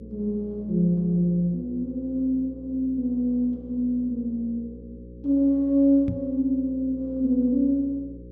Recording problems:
electrical hum; 60 Hz, harmonics up to 540 Hz, SNR 19 dB
microphone thump; at 6 s; peak -1 dB vs average level

